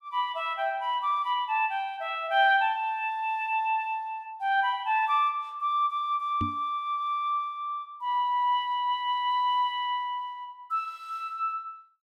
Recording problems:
microphone bump; at 6.5 s; peak 0 dB vs average level

